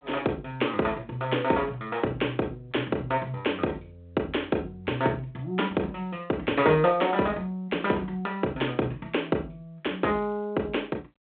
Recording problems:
telephone audio; 240 Hz to 3.8 kHz, G.726

